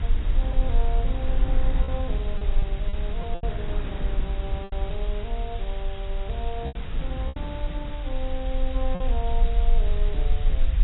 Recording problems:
lossy compression; AAC, log-spectral distance 6 dB, nothing above 3.8 kHz
hiss; SNR 9 dB
rumble; below 44 Hz, strongest tone 24 Hz, SNR -7 dB
wind on the microphone; below 320 Hz, SNR 4 dB
packet loss; 5% of the sound replaced, filled with repeated pitch periods

